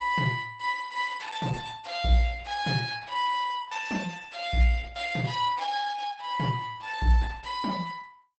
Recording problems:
codec artefacts; Opus, log-spectral distance 4 dB, nothing above 8.2 kHz

